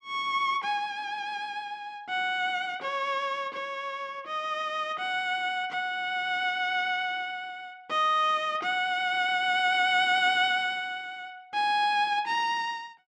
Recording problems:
none

